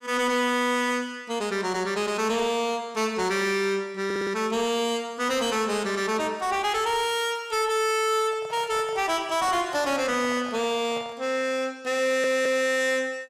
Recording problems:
distortion; soft clipping, signal-to-distortion ratio 10 dB
audio stuttering; at 4 s and at 12 s
microphone handling noise; from 8.5 to 11 s; peak -9 dB vs average level

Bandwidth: 15 kHz